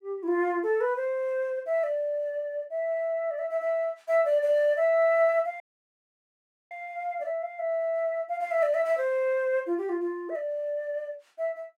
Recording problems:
audio cutting out; at 5.5 s for 1 s

